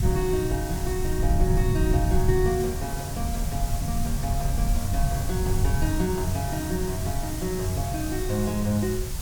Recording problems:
background hiss; slope -1 dB per octave, SNR 8 dB
rumble; below 110 Hz, SNR 0 dB

